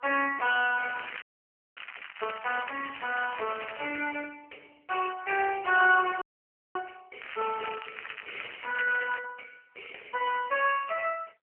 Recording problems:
phone line; 320 Hz to 2.8 kHz, AMR-NB
crackling; from 1 to 4 s and from 7 to 9 s; loose cable, SNR 14 dB
audio freezing; at 1 s for 0.5 s and at 6 s for 0.5 s

